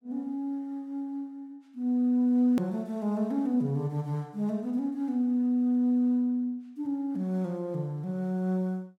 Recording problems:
hard cut with a click; at 2.5 s

